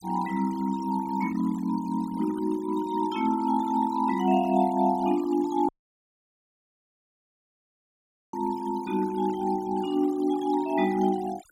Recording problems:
denoising artefacts; signal-to-artefact ratio 18 dB
audio cutting out; at 5.5 s for 2.5 s

